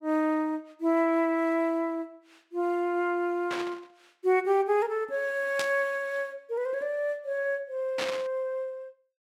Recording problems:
static burst; at 3.5 s, at 5.5 s and at 8 s; peak 0 dB vs average level

